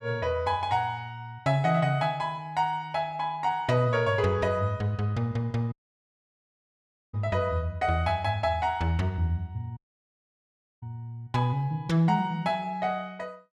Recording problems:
audio cutting out; at 5.5 s for 1.5 s and at 10 s for 1 s

